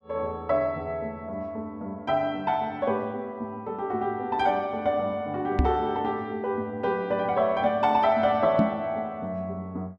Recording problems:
microphone bump; at 5.5 s and at 8.5 s; peak +7 dB vs average level

